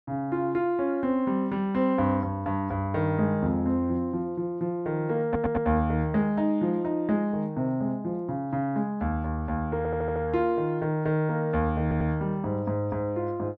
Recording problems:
audio stuttering; at 5.5 s, at 10 s and at 12 s

